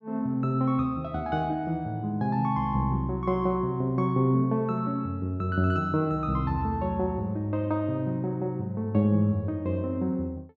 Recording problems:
none

